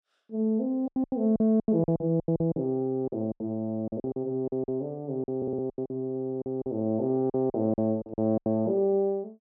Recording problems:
lost packets; 15% of the sound replaced, filled with silence
stutter; at 5.5 s

